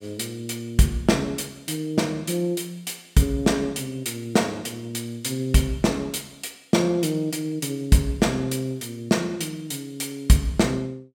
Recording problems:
none

